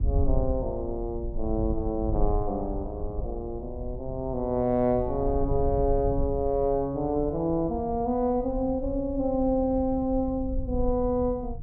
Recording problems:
rumble; below 72 Hz, SNR 8 dB

